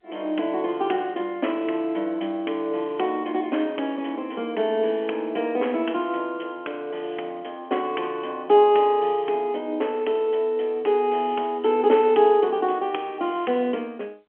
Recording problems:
telephone audio; 240 Hz to 3.3 kHz, G.711

